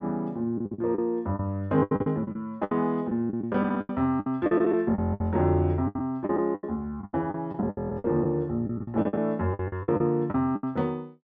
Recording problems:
packet loss; 16% of the sound replaced, filled with the last packet

